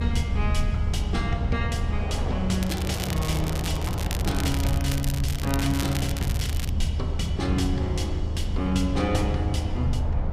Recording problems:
low-frequency rumble; below 86 Hz, SNR 0 dB
wind on the microphone; below 800 Hz, SNR 10 dB
crackle; from 2.5 to 6.5 s; loose cable, SNR 6 dB

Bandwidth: 14.5 kHz